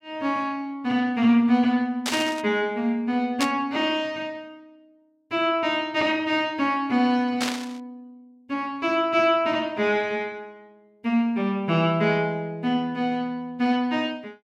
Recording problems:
static burst; at 2 s, at 3.5 s and at 7.5 s; peak +2 dB vs average level

